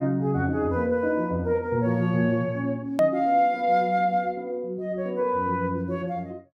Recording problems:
click at an edit; at 3 s

